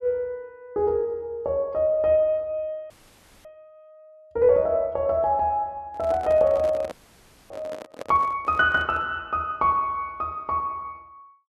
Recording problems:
frozen audio; at 3 s for 0.5 s and at 7 s for 0.5 s
handling noise; from 6 to 9 s; peak -8 dB vs average level

